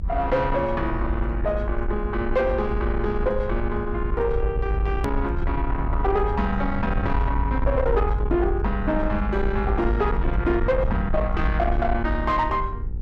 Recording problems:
distorted audio; soft clipping, signal-to-distortion ratio 10 dB
electrical hum; 60 Hz, harmonics up to 900 Hz, SNR 21 dB
rumble; below 74 Hz, SNR 3 dB
click at an edit; at 5 s

